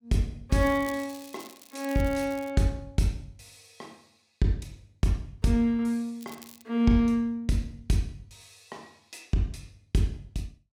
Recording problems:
crackle; until 2.5 s and at 6 s; loose cable, SNR 20 dB

